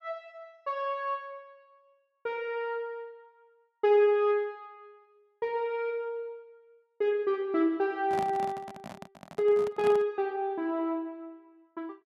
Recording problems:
handling noise; from 8 to 10 s; peak -4 dB vs average level

